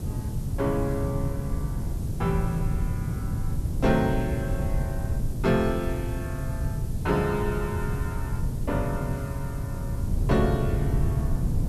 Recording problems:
background hiss; slope +3 dB per octave, SNR 19 dB
low-frequency rumble; below 140 Hz, SNR 0 dB

